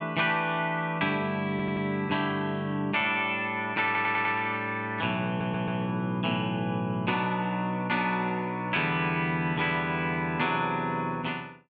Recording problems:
audio stuttering; at 1.5 s, at 4 s and at 5.5 s

